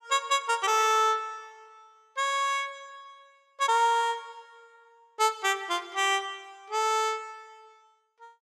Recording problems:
none

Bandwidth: 16.5 kHz